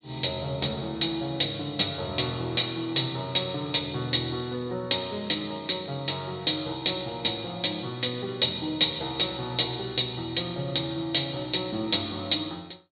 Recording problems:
treble missing; nothing above 4.4 kHz

